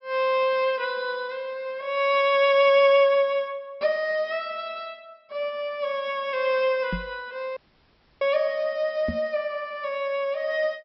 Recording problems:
low-pass filter; nothing above 5.6 kHz
microphone thump; at 7 s and at 9 s; peak -2 dB vs average level
audio cutting out; at 7.5 s for 0.5 s

